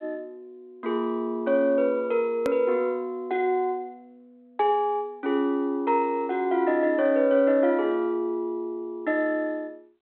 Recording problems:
telephone audio; 240 Hz to 3.4 kHz, G.726
hard cut with a click; at 2.5 s

